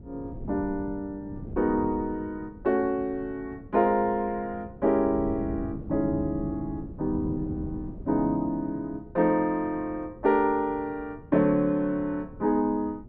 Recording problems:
wind on the microphone; below 230 Hz, SNR 14 dB

